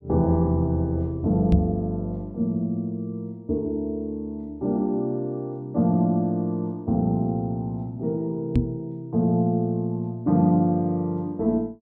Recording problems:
microphone bump; at 1.5 s and at 8.5 s; peak +7 dB vs average level

